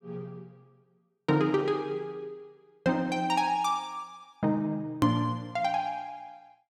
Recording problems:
hard cut with a click; at 5 s

